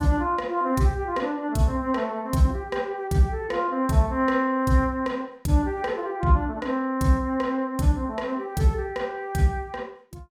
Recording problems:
none

